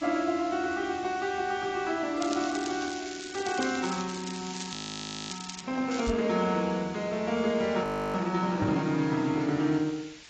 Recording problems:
codec artefacts; AAC, log-spectral distance 9 dB, nothing above 13.1 kHz
hiss; SNR 17 dB
crackling; from 2 to 5.5 s and at 6 s; loose cable, SNR 10 dB
audio freezing; at 4.5 s for 0.5 s and at 8 s
knock on the microphone; at 6 s and at 8.5 s; peak 0 dB vs average level

